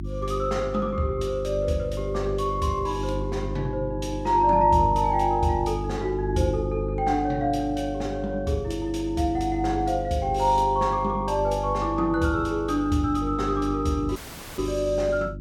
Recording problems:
hum; 50 Hz, harmonics up to 350 Hz, SNR 9 dB
audio cutting out; at 14 s

